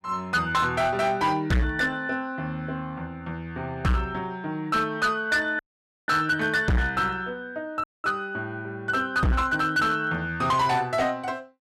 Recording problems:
distortion; hard clipping, signal-to-distortion ratio 8 dB
dropout; at 5.5 s and at 8 s

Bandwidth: 13 kHz